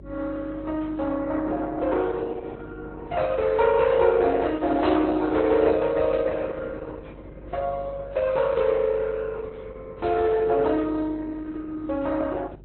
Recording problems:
lossy compression; Opus, then AAC, log-spectral distance 3 dB, nothing above 4 kHz
hum; 50 Hz, harmonics up to 400 Hz, SNR 20 dB

